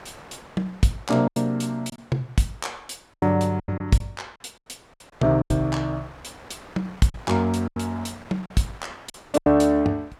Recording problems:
wind noise; below 1.7 kHz, SNR 23 dB
lost packets; 10% of the sound replaced, filled with silence

